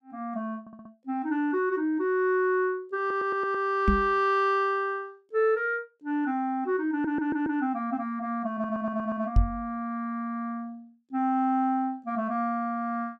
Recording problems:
audio stuttering; 4 times, first at 0.5 s
microphone bump; at 4 s and at 9.5 s; peak +9 dB vs average level

